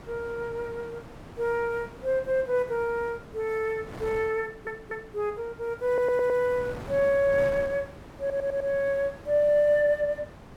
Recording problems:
wind noise; below 880 Hz, SNR 17 dB
audio stuttering; at 4.5 s, at 6 s and at 8 s

